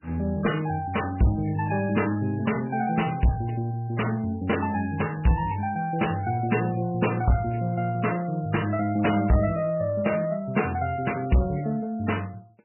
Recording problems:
codec artefacts; MP3, log-spectral distance 4 dB, nothing above 2.9 kHz
distortion; soft clipping, signal-to-distortion ratio 11 dB

